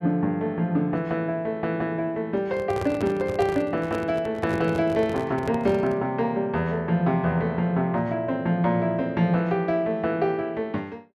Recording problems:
handling noise; from 2.5 to 6 s; peak -2 dB vs average level

